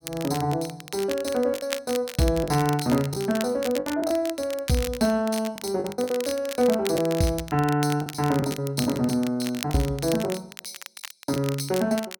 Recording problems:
crackling; vinyl, SNR 12 dB
lost packets; 7% of the sound replaced, filled with the last packet

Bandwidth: 17.5 kHz